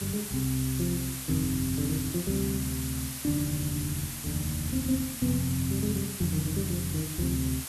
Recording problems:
hiss; slope +1 dB per octave, SNR 5 dB

